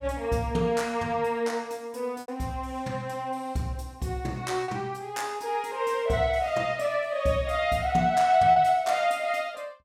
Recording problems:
packet loss; 1.6% of the sound replaced, filled with repeated pitch periods

